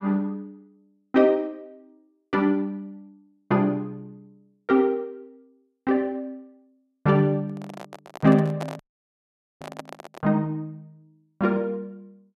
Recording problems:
handling noise; from 7.5 to 10 s; peak -5 dB vs average level
dropout; at 9 s for 1 s

